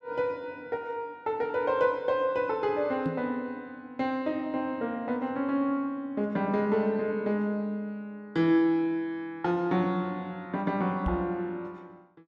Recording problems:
microphone bump; at 3 s and at 11 s; peak +1 dB vs average level

